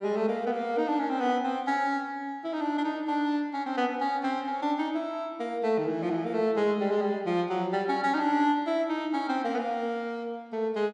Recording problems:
none

